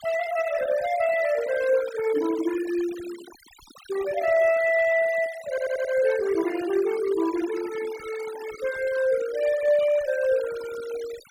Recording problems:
noise reduction artefacts; signal-to-artefact ratio 16 dB
stutter; at 5.5 s

